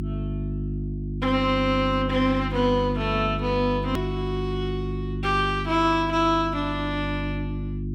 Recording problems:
hum; 50 Hz, harmonics up to 350 Hz, SNR 5 dB
edit click; at 4 s

